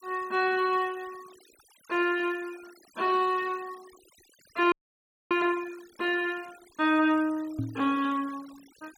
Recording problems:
noise reduction artefacts; signal-to-artefact ratio 24 dB
frozen audio; at 4.5 s for 0.5 s
knock on the microphone; at 7.5 s; peak 0 dB vs average level

